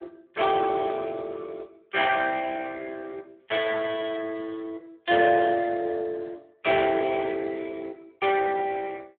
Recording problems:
phone line; 280 Hz to 2.9 kHz, Speex

